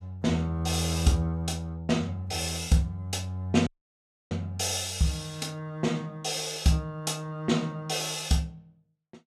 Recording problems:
dropout; at 3.5 s for 0.5 s

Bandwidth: 14.5 kHz